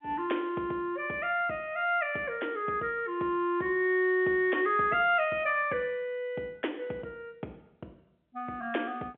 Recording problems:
telephone audio; 220 Hz to 3.4 kHz, G.711

